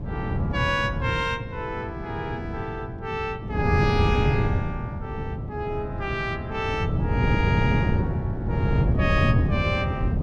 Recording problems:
wind noise; below 200 Hz, SNR -2 dB

